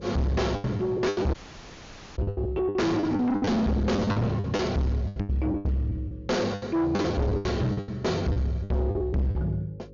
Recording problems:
treble cut off; nothing above 7 kHz
distorted audio; soft clipping, signal-to-distortion ratio 5 dB
hum; 50 Hz, harmonics up to 600 Hz, SNR 22 dB
lost packets; 18% of the sound replaced, filled with the last packet
dropout; at 1.5 s for 1 s

